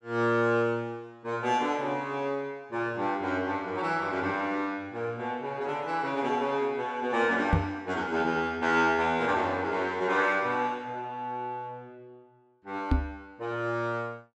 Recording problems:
microphone bump; at 7.5 s and at 13 s; peak +8 dB vs average level

